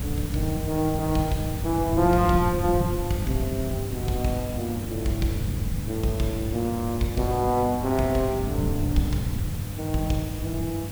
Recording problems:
hum; 50 Hz, harmonics up to 800 Hz, SNR 9 dB
background hiss; slope -2 dB per octave, SNR 13 dB
wind noise; below 170 Hz, SNR 6 dB

